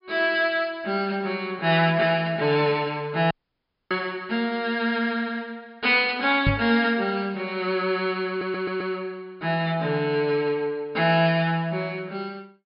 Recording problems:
treble missing; nothing above 5.5 kHz
dropout; at 3.5 s for 0.5 s
microphone bump; at 4 s and at 6.5 s; peak +4 dB vs average level
audio stuttering; at 8.5 s

